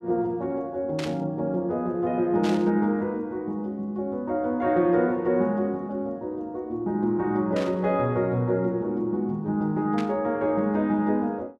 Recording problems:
static burst; 4 times, first at 1 s; peak -5 dB vs average level

